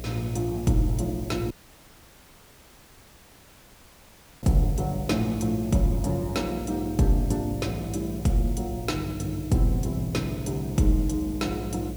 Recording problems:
hum; 60 Hz, harmonics up to 720 Hz, SNR 12 dB
background hiss; slope +2 dB per octave, SNR 20 dB
audio cutting out; at 1.5 s for 3 s

